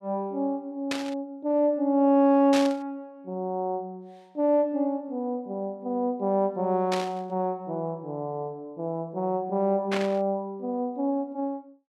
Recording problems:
static burst; 4 times, first at 1 s; peak 0 dB vs average level

